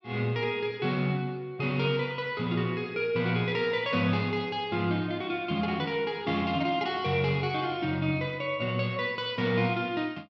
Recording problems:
none

